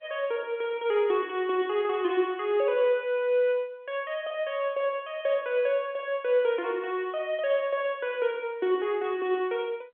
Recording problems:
phone line; 220 Hz to 3.4 kHz, G.711

